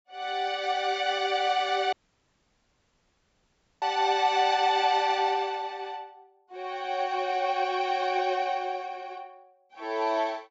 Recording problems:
low-pass filter; nothing above 8 kHz
dropout; at 2 s for 2 s

